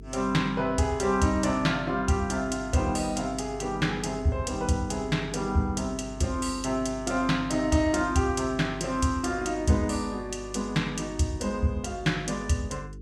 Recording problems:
hum; 50 Hz, harmonics up to 450 Hz, SNR 16 dB

